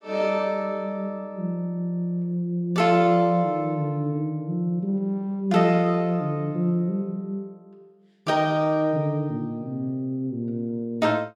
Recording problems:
none

